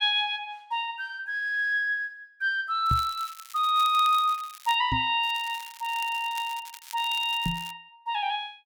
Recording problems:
crackling; from 3 to 5 s and from 5 to 7.5 s; loose cable, SNR 17 dB
knock on the microphone; at 3 s, at 5 s and at 7.5 s; peak +2 dB vs average level

